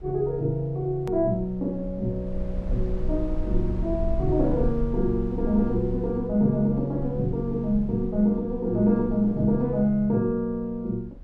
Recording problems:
low-frequency rumble; below 56 Hz, SNR 11 dB
edit click; at 1 s

